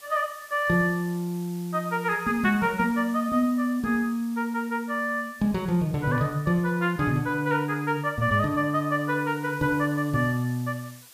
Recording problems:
hiss; slope +2 dB per octave, SNR 23 dB

